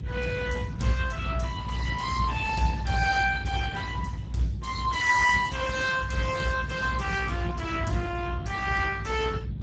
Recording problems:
codec artefacts; Speex, log-spectral distance 4 dB, nothing above 7.3 kHz
electrical hum; 50 Hz, harmonics up to 350 Hz, SNR 16 dB
rumble; below 150 Hz, strongest tone 60 Hz, SNR 7 dB

